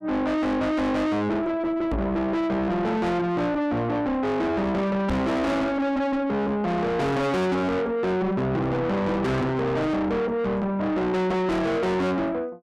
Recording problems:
distortion; soft clipping, signal-to-distortion ratio 6 dB
microphone bump; at 2 s and at 5 s; peak +3 dB vs average level

